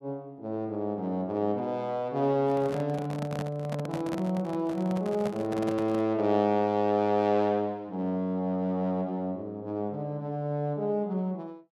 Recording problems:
microphone handling noise; from 2.5 to 6 s; peak -3 dB vs average level

